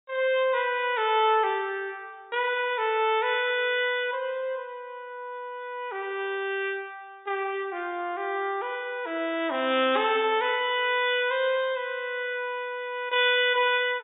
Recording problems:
treble missing; nothing above 4 kHz

